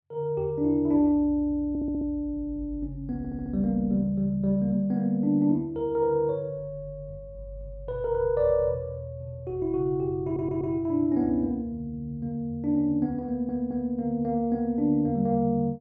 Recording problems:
audio stuttering; 4 times, first at 1.5 s

